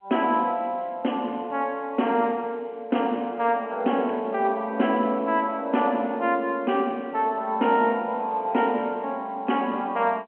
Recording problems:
phone line; 220 Hz to 3.2 kHz, G.711

